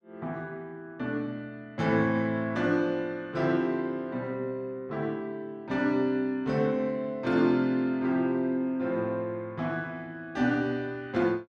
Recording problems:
none

